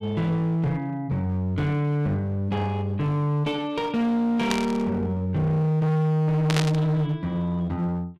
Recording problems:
distortion; hard clipping, uneven, signal-to-distortion ratio 6 dB
burst of static; at 4.5 s and at 6.5 s; peak +2 dB vs average level

